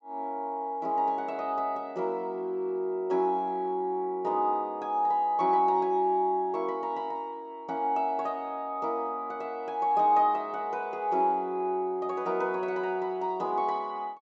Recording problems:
low-pass filter; nothing above 8 kHz

